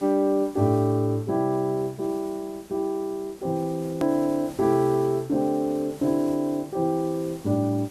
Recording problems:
hiss; slope -4 dB per octave, SNR 21 dB
edit click; at 4 s

